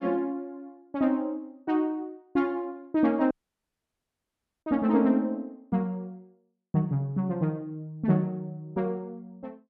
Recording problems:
audio cutting out; at 3.5 s for 1.5 s

